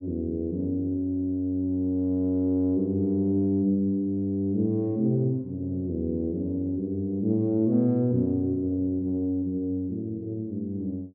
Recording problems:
none

